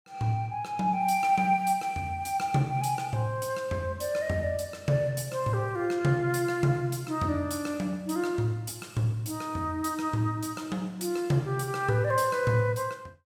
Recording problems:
none

